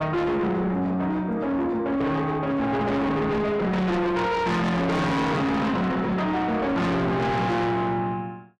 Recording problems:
distorted audio; soft clipping, signal-to-distortion ratio 6 dB

